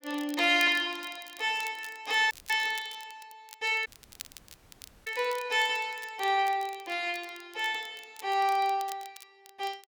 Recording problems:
crackle; vinyl, SNR 19 dB
dropout; at 2.5 s and at 4 s for 1 s

